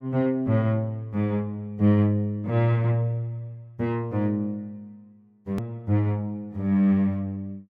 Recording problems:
edit click; at 5.5 s

